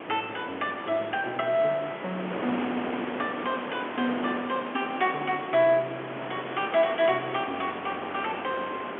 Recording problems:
telephone audio; 220 Hz to 3.4 kHz, G.711
hiss; SNR 8 dB
wind on the microphone; below 1.1 kHz, SNR 11 dB

